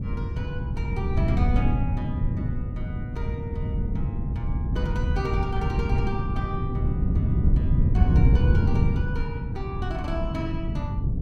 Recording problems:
wind noise; below 140 Hz, SNR -9 dB

